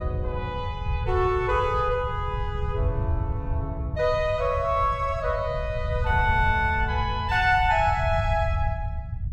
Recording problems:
rumble; below 100 Hz, SNR 5 dB

